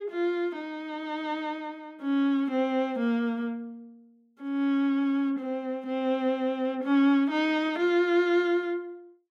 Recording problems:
none

